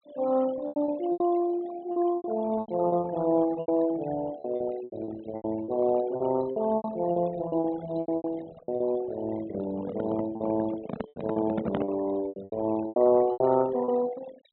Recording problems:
treble missing; nothing above 4 kHz
noise reduction artefacts; signal-to-artefact ratio 16 dB
packet loss; 14% of the sound replaced, filled with repeated pitch periods
microphone handling noise; from 9.5 to 12 s; peak +1 dB vs average level

